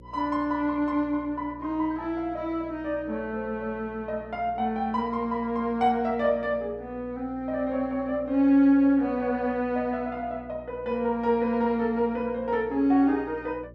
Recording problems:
hum; 60 Hz, harmonics up to 540 Hz, SNR 22 dB

